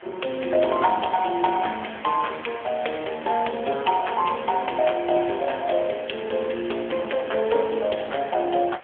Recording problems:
phone line; 300 Hz to 3.3 kHz, AMR-NB
hiss; SNR 21 dB

